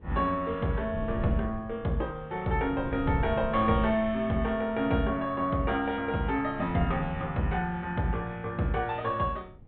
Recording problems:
treble missing; nothing above 4 kHz
wind noise; below 160 Hz, SNR 13 dB

